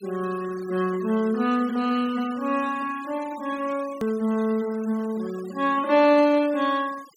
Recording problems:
denoising artefacts; signal-to-artefact ratio 21 dB
click at an edit; at 4 s

